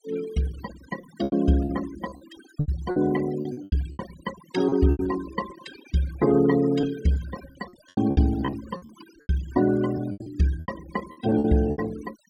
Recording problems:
noise reduction artefacts; signal-to-artefact ratio 15 dB
packet loss; 13% of the sound replaced, filled with repeated pitch periods

